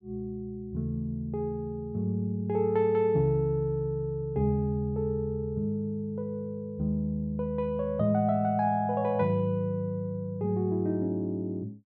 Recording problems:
none

